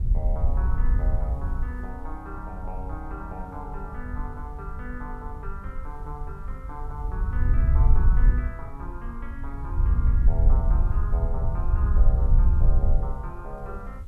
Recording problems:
background hiss; slope -3 dB per octave, SNR 27 dB
wind noise; below 66 Hz, SNR -13 dB

